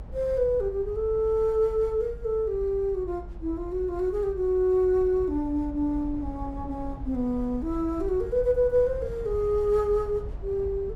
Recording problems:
rumble; below 80 Hz, SNR 13 dB

